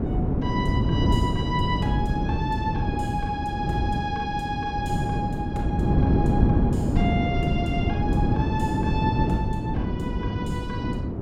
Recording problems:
wind on the microphone; below 270 Hz, SNR -6 dB

